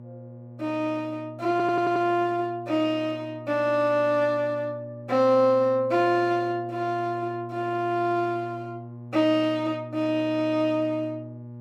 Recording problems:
hum; 60 Hz, harmonics up to 840 Hz, SNR 16 dB
audio stuttering; at 1.5 s

